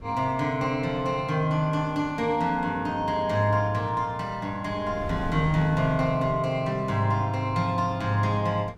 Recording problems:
wind noise; below 270 Hz, SNR 16 dB

